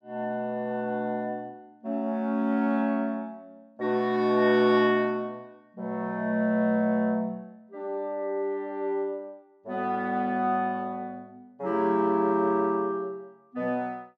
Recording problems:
none

